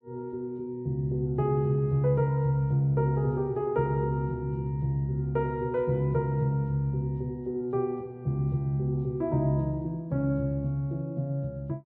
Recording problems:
none

